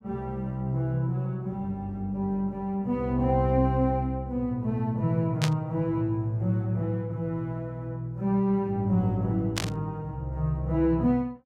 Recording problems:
static burst; at 5.5 s and at 9.5 s; peak +3 dB vs average level

